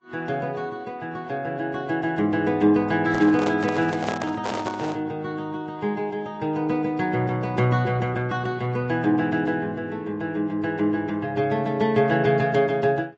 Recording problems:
treble cut off; nothing above 8 kHz
lossy codec; Vorbis, then AAC, log-spectral distance 2 dB
handling noise; from 3 to 5 s; peak -1 dB vs average level

